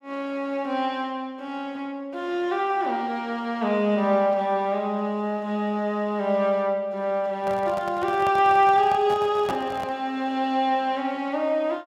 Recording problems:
microphone handling noise; from 7.5 to 10 s; peak -3 dB vs average level

